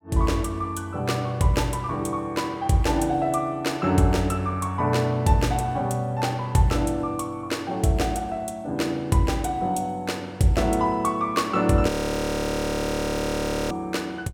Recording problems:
frozen audio; at 12 s for 2 s

